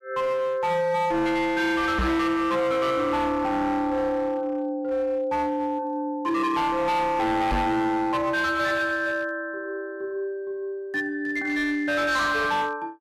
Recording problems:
distorted audio; hard clipping, signal-to-distortion ratio 8 dB
knock on the microphone; at 2 s and at 7.5 s; peak +4 dB vs average level

